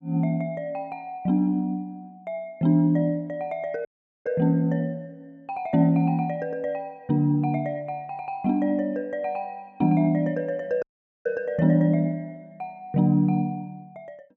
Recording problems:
dropout; at 4 s and at 11 s

